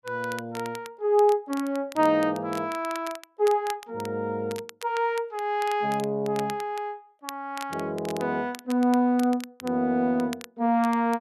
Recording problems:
crackle; vinyl, SNR 18 dB

